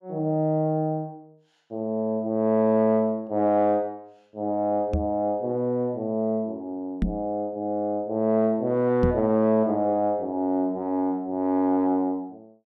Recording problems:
microphone bump; at 5 s, at 7 s and at 9 s; peak +4 dB vs average level

